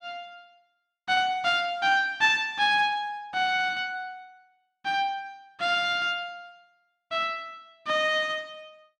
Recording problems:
none

